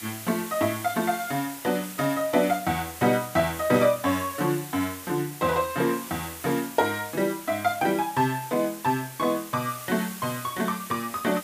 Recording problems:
background hiss; slope 0 dB per octave, SNR 12 dB

